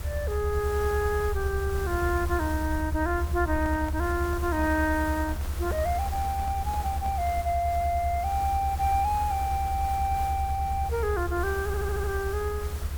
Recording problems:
background hiss; slope -4 dB per octave, SNR 13 dB
low-frequency rumble; below 78 Hz, SNR 4 dB
microphone handling noise; from 3.5 to 7.5 s; peak -10 dB vs average level
audio stuttering; at 12 s

